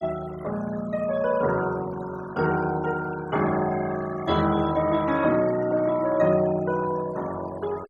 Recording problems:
denoising artefacts; signal-to-artefact ratio 18 dB

